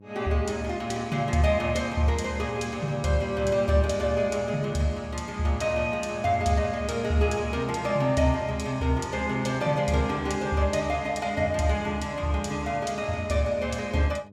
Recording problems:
electrical hum; 50 Hz, harmonics up to 600 Hz, SNR 23 dB

